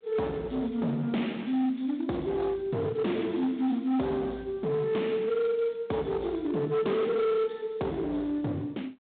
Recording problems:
telephone audio; 130 Hz to 3.7 kHz, G.726
distortion; hard clipping, signal-to-distortion ratio 11 dB

